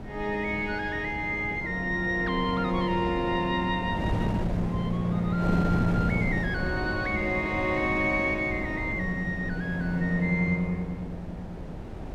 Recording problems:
wind noise; below 380 Hz, SNR 7 dB

